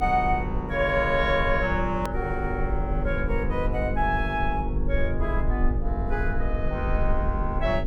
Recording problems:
mains hum; 50 Hz, harmonics up to 500 Hz, SNR 6 dB
rumble; below 58 Hz, SNR 4 dB
edit click; at 2 s

